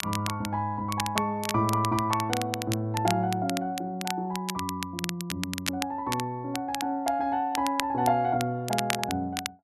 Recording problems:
crackling; vinyl, SNR 7 dB

